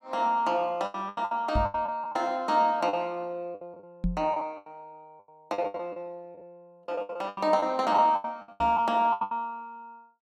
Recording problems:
lost packets; 16% of the sound replaced, filled with the last packet
knock on the microphone; at 1.5 s, at 4 s and at 8.5 s; peak +3 dB vs average level

